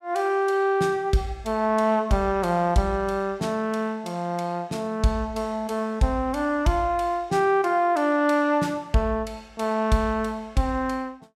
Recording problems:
none

